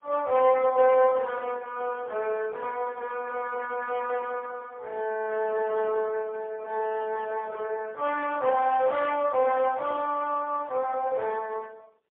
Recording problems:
telephone audio; 320 Hz to 3.2 kHz, AMR-NB, then MP3
distorted audio; hard clipping, uneven, signal-to-distortion ratio 15 dB

